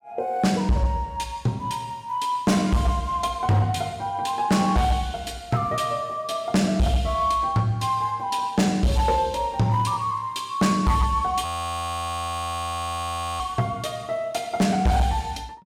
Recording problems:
distorted audio; hard clipping, signal-to-distortion ratio 11 dB
frozen audio; at 11 s for 2 s

